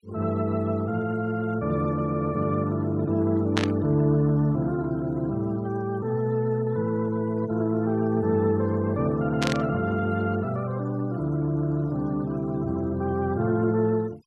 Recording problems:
denoising artefacts; signal-to-artefact ratio 26 dB
static burst; at 3.5 s and at 9.5 s; peak +2 dB vs average level

